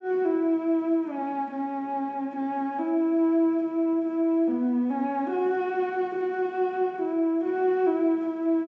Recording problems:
low-pass filter; nothing above 8 kHz

